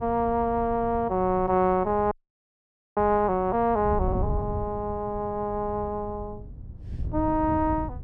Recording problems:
wind on the microphone; below 130 Hz, SNR 11 dB
frozen audio; at 2 s for 1 s

